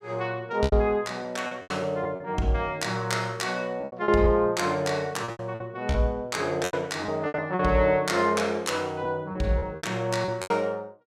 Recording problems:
lost packets; 10% of the sound replaced, filled with repeated pitch periods

